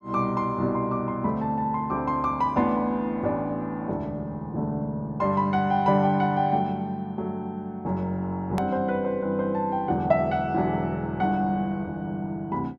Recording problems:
edit click; at 8.5 s

